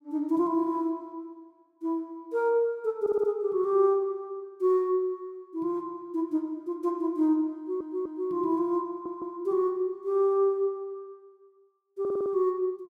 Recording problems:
stutter; 4 times, first at 3 s

